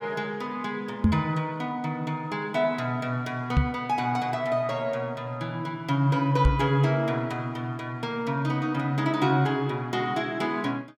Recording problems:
knock on the microphone; at 1 s, at 3.5 s and at 6.5 s; peak +9 dB vs average level

